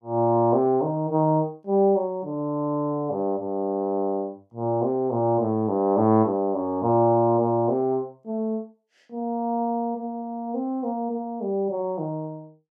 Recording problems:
none

